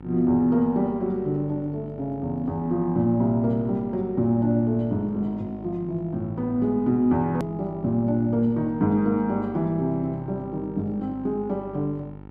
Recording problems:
hum; 50 Hz, harmonics up to 1.4 kHz, SNR 18 dB
hard cut with a click; at 7.5 s

